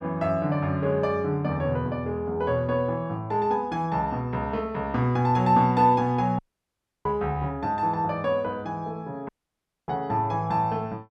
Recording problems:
dropout; at 6.5 s for 0.5 s and at 9.5 s for 0.5 s

